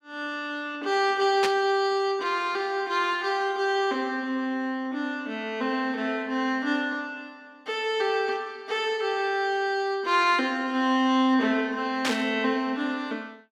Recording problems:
static burst; at 1.5 s and at 12 s; peak +2 dB vs average level

